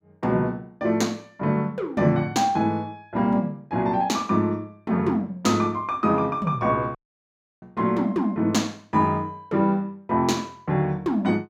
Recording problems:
dropout; at 7 s for 0.5 s

